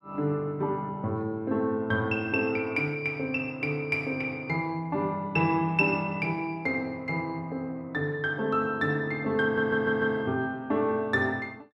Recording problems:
audio stuttering; at 9.5 s

